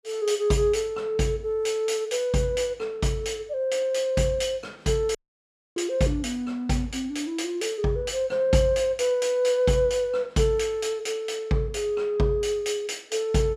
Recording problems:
dropout; at 5 s for 0.5 s

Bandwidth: 14.5 kHz